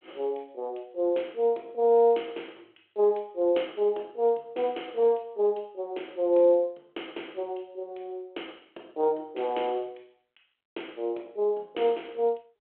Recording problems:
telephone audio; 280 Hz to 3.3 kHz, G.726

